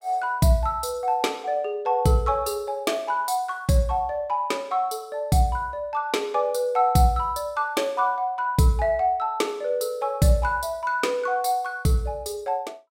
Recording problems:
none

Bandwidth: 16 kHz